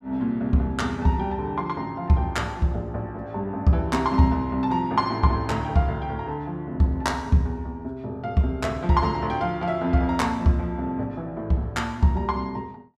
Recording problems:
none

